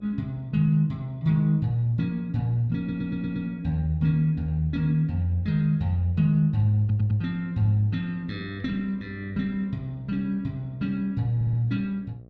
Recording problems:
electrical hum; 60 Hz, harmonics up to 780 Hz, SNR 25 dB
stutter; at 3 s, at 7 s and at 11 s

